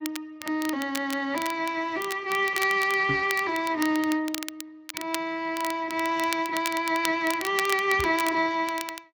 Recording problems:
lossy compression; Speex, log-spectral distance 3 dB
crackle; vinyl, SNR 11 dB
knock on the microphone; at 3 s and at 8 s; peak -1 dB vs average level

